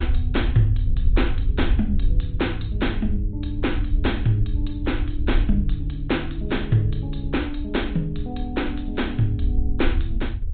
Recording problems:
treble missing; nothing above 4 kHz
lossy compression; MP3, then MP2, log-spectral distance 3 dB
low-frequency rumble; below 68 Hz, SNR 2 dB

